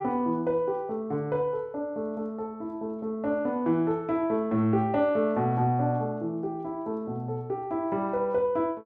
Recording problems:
none

